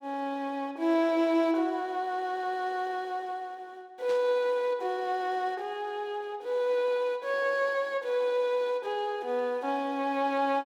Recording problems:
burst of static; at 4 s; peak -12 dB vs average level

